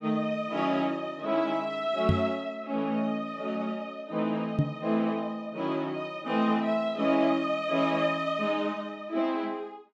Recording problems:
microphone thump; at 2 s and at 4.5 s; peak +8 dB vs average level

